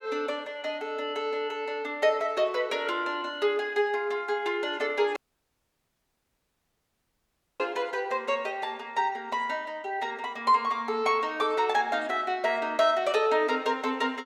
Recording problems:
audio cutting out; at 5 s for 2.5 s

